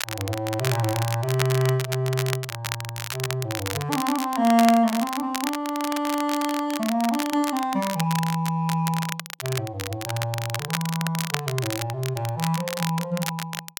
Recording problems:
crackling; vinyl, SNR 7 dB

